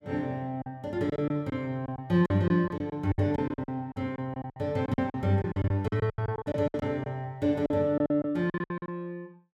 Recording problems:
packet loss; 16% of the sound replaced, filled with silence

